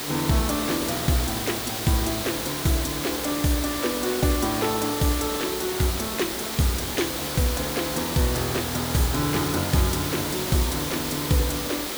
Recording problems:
hiss; slope -3 dB per octave, SNR 2 dB

